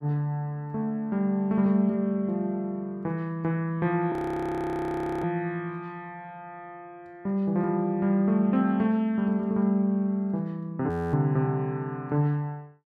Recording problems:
audio freezing; at 4 s for 1 s and at 11 s

